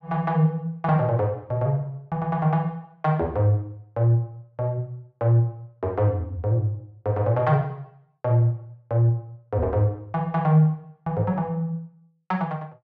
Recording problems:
none

